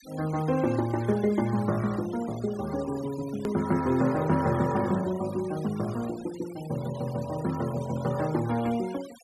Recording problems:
denoising artefacts; signal-to-artefact ratio 18 dB
edit click; at 3.5 s

